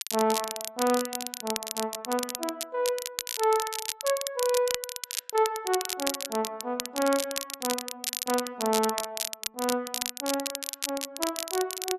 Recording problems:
crackling; vinyl, SNR 3 dB

